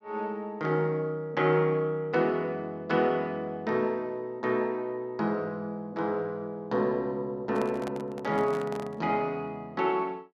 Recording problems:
handling noise; from 7.5 to 9 s; peak -5 dB vs average level

